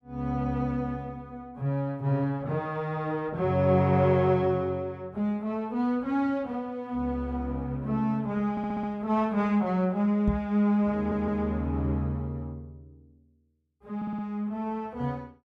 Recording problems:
audio stuttering; at 8.5 s, at 11 s and at 14 s
knock on the microphone; at 10 s; peak +3 dB vs average level

